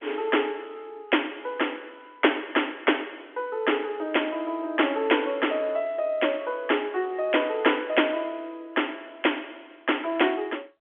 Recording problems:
phone line; 280 Hz to 3.4 kHz, G.711

